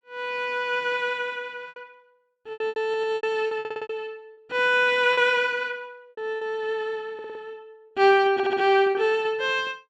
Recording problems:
packet loss; 8% of the sound replaced, filled with repeated pitch periods
stutter; 4 times, first at 3 s

